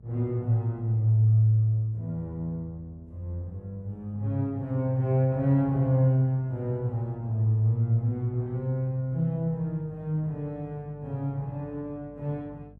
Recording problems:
hum; 50 Hz, harmonics up to 500 Hz, SNR 25 dB

